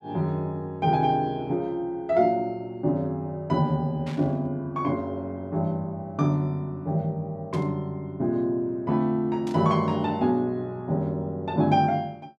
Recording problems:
burst of static; at 4 s, at 7.5 s and at 9.5 s; peak -12 dB vs average level

